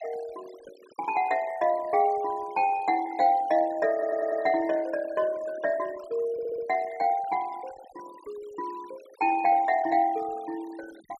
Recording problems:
noise reduction artefacts; signal-to-artefact ratio 22 dB
audio stuttering; at 4 s and at 6.5 s

